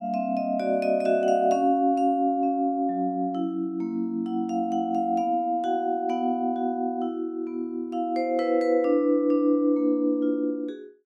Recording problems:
none

